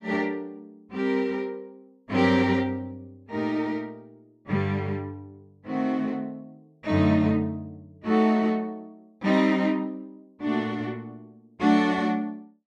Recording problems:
none

